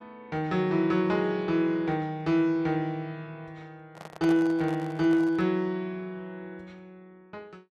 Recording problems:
handling noise; from 4 to 5.5 s; peak -7 dB vs average level

